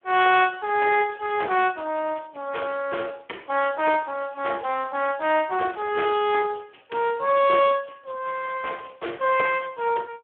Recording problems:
phone line; 320 Hz to 3.7 kHz, Speex

